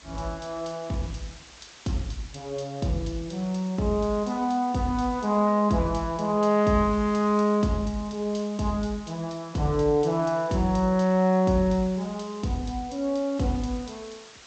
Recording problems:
lossy codec; G.722, log-spectral distance 5 dB, nothing above 7.6 kHz
background hiss; slope 0 dB per octave, SNR 22 dB

